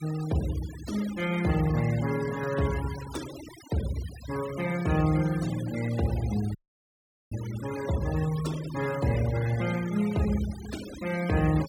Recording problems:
noise reduction artefacts; signal-to-artefact ratio 14 dB
audio cutting out; at 6.5 s for 1 s

